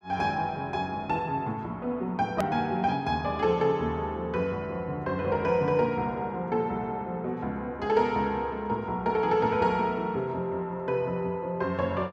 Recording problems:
click at an edit; at 2.5 s

